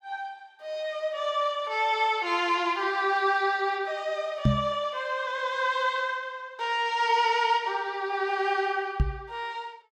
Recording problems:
microphone thump; at 4.5 s and at 9 s; peak +8 dB vs average level

